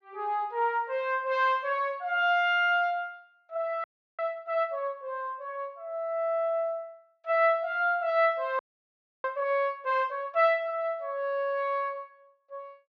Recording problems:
audio freezing; at 4 s and at 8.5 s for 0.5 s

